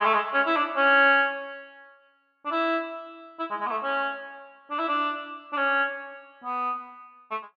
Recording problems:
none

